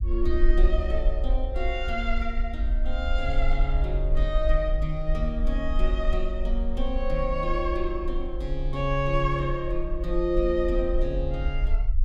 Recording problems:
low-frequency rumble; below 46 Hz, strongest tone 24 Hz, SNR 0 dB

